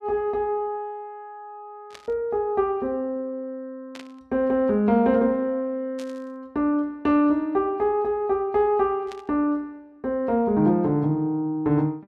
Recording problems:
static burst; 4 times, first at 2 s; peak -13 dB vs average level

